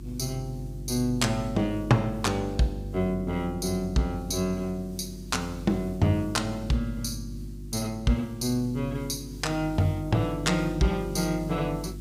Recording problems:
electrical hum; 50 Hz, harmonics up to 350 Hz, SNR 11 dB
background hiss; SNR 27 dB

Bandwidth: 15.5 kHz